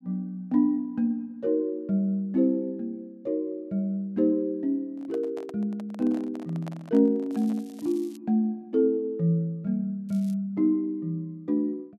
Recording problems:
handling noise; from 5 to 8 s; peak -10 dB vs average level
crackle; at 7.5 s and at 10 s; loose cable, SNR 28 dB

